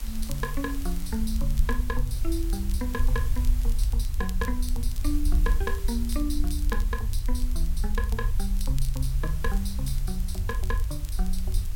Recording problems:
electrical hum; 50 Hz, harmonics up to 700 Hz, SNR 21 dB
hiss; slope -1 dB per octave, SNR 12 dB
rumble; below 54 Hz, SNR -4 dB
crackle; vinyl, SNR 15 dB

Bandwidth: 16.5 kHz